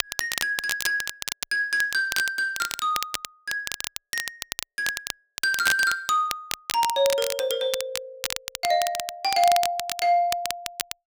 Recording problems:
crackling; vinyl, SNR 6 dB

